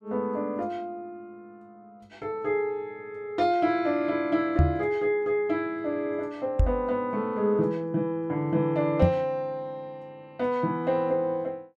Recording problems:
microphone bump; at 4.5 s, at 6.5 s and at 9 s; peak +9 dB vs average level

